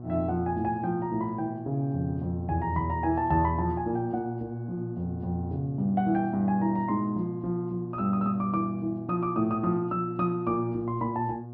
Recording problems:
treble missing; nothing above 5.5 kHz
hum; 60 Hz, harmonics up to 1.1 kHz, SNR 12 dB

